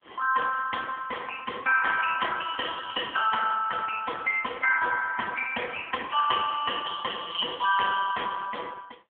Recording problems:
phone line; 410 Hz to 2.6 kHz, AMR-NB

